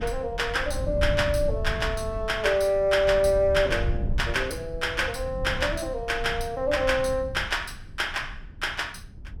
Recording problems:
low-frequency rumble; below 100 Hz, SNR 9 dB

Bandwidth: 17 kHz